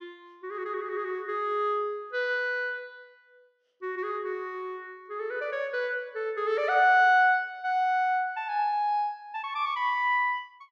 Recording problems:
none

